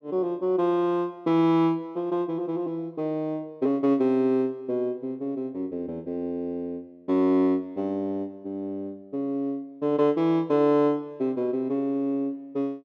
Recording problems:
none

